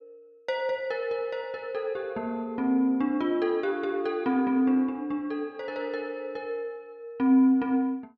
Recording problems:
none

